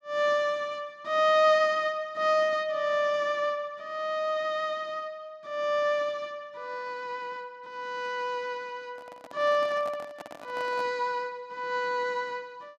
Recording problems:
handling noise; from 9 to 11 s; peak -9 dB vs average level

